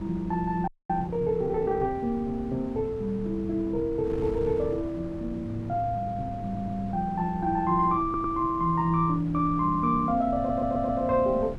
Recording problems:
wind noise; below 260 Hz, SNR 13 dB
audio freezing; at 0.5 s
stutter; at 6.5 s, at 8 s and at 10 s

